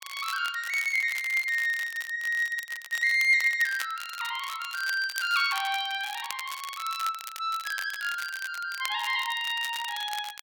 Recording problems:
crackling; vinyl, SNR 13 dB

